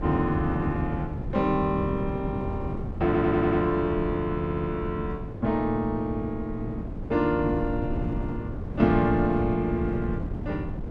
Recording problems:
wind noise; below 230 Hz, SNR 6 dB
stutter; at 3 s and at 4.5 s

